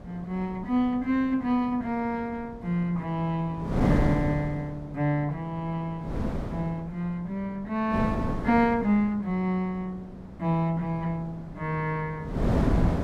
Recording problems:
wind noise; below 330 Hz, SNR 2 dB

